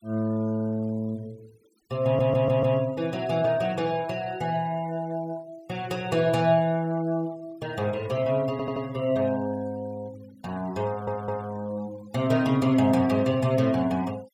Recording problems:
denoising artefacts; signal-to-artefact ratio 25 dB
audio stuttering; at 2 s, at 8.5 s and at 11 s

